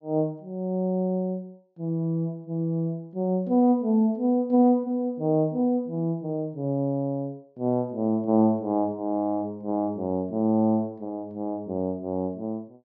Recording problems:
treble missing; nothing above 6.9 kHz

